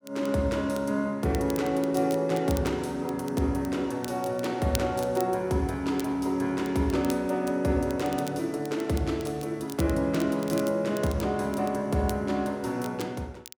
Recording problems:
crackling; vinyl, SNR 18 dB

